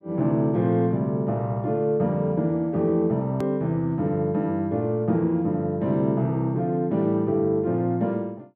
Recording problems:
click at an edit; at 3.5 s

